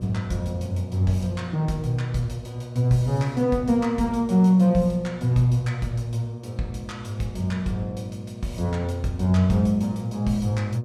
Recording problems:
electrical hum; 60 Hz, harmonics up to 1.1 kHz, SNR 16 dB

